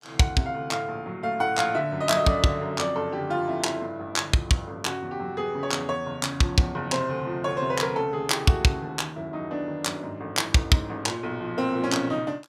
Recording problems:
none

